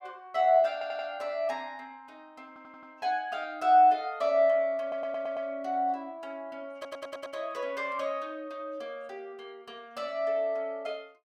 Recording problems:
audio stuttering; 4 times, first at 0.5 s

